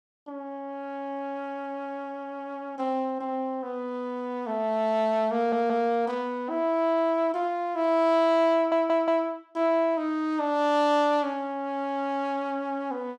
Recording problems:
audio stuttering; at 5.5 s and at 8.5 s

